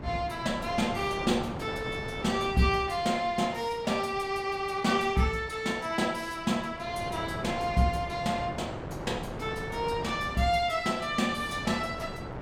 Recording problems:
wind on the microphone; below 760 Hz, SNR 11 dB

